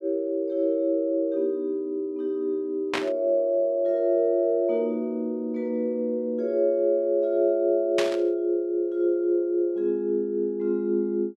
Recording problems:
static burst; at 3 s and at 8 s; peak +2 dB vs average level

